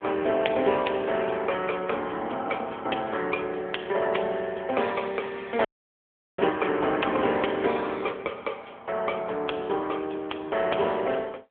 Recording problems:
phone line; 320 Hz to 3.4 kHz, AMR-NB
audio cutting out; at 5.5 s for 0.5 s

